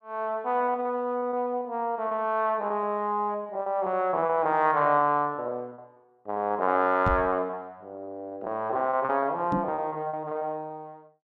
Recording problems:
lost packets; 15% of the sound replaced, filled with repeated pitch periods
microphone bump; at 7 s and at 9.5 s; peak +2 dB vs average level

